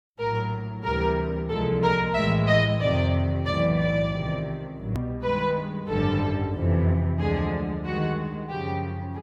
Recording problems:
edit click; at 5 s

